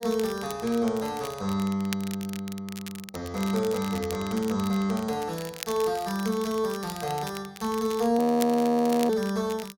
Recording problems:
crackle; vinyl, SNR 14 dB
audio freezing; at 8 s for 1 s

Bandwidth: 16.5 kHz